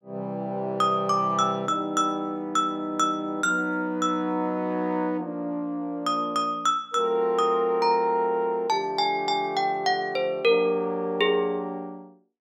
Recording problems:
none

